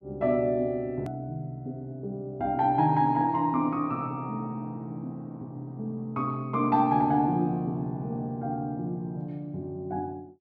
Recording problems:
edit click; at 1 s

